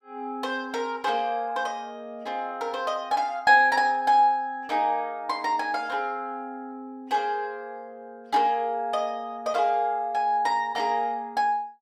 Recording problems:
none

